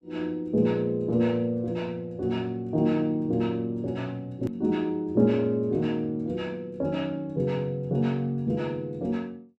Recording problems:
edit click; at 4.5 s

